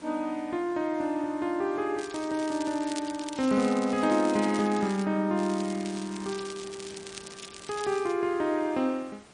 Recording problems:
lossy compression; MP3, log-spectral distance 6 dB
hiss; slope -4 dB per octave, SNR 22 dB
crackling; from 2 to 5 s and from 5.5 to 8 s; loose cable, SNR 15 dB

